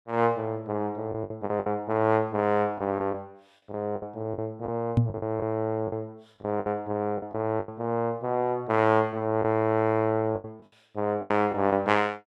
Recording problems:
packet loss; 9% of the sound replaced, filled with the last packet
microphone thump; at 5 s; peak +8 dB vs average level

